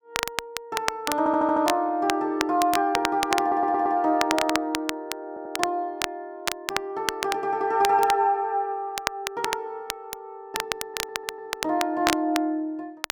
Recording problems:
crackle; vinyl, SNR 6 dB
stutter; 4 times, first at 1 s

